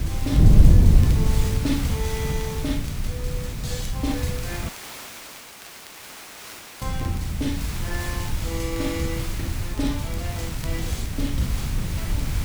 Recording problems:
hum; 60 Hz, harmonics up to 720 Hz, SNR 26 dB
background hiss; slope -1 dB per octave, SNR 4 dB
wind noise; below 120 Hz, SNR -7 dB
crackle; vinyl, SNR 17 dB
audio cutting out; at 4.5 s for 2 s

